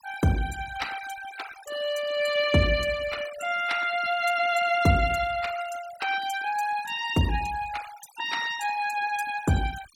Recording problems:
noise reduction artefacts; signal-to-artefact ratio 15 dB

